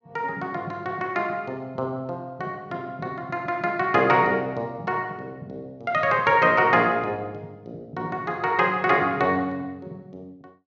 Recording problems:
none

